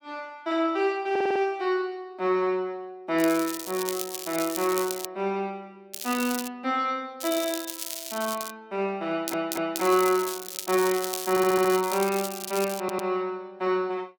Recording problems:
stutter; 4 times, first at 1 s
crackling; 4 times, first at 3 s; loose cable, SNR 7 dB

